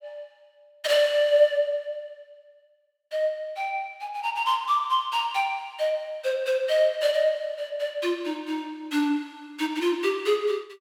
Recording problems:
none

